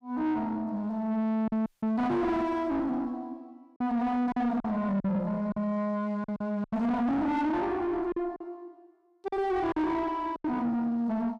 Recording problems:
distorted audio; soft clipping, signal-to-distortion ratio 6 dB
lost packets; 6% of the sound replaced, filled with silence
audio cutting out; at 1.5 s

